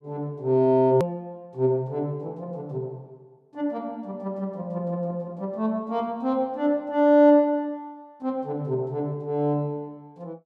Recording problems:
hard cut with a click; at 1 s

